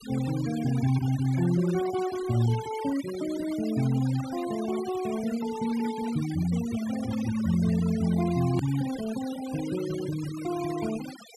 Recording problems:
denoising artefacts; signal-to-artefact ratio 14 dB
edit click; at 8.5 s

